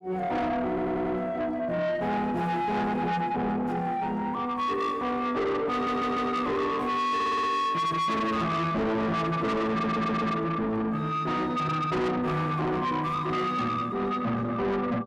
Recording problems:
distorted audio; soft clipping, signal-to-distortion ratio 6 dB
stutter; 4 times, first at 0.5 s

